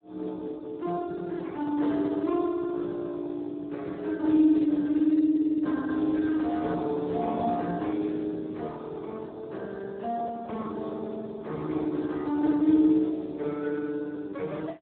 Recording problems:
telephone audio; 190 Hz to 2.2 kHz, Speex

